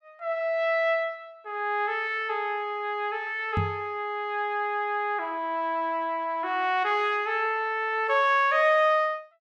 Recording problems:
microphone thump; at 3.5 s; peak +2 dB vs average level

